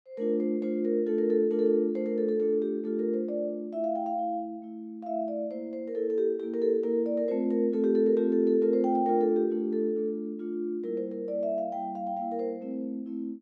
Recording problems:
none

